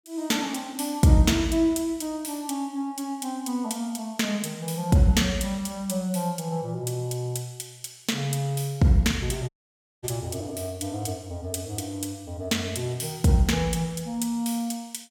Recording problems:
audio cutting out; at 9.5 s for 0.5 s

